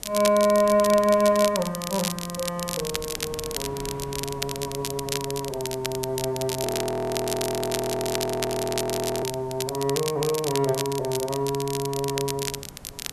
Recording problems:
hiss; SNR 29 dB
wind noise; below 650 Hz, SNR 20 dB
crackling; vinyl, SNR 6 dB
audio freezing; at 6.5 s for 2.5 s

